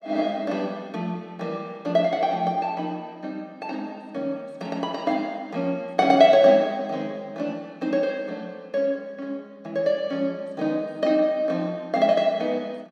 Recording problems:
none

